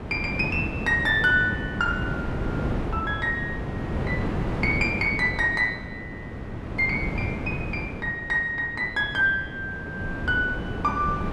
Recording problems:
wind on the microphone; below 420 Hz, SNR 6 dB

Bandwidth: 12.5 kHz